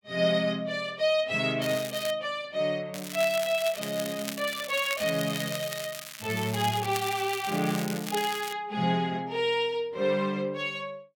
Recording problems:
crackling; at 1.5 s and from 3 to 8.5 s; loose cable, SNR 9 dB

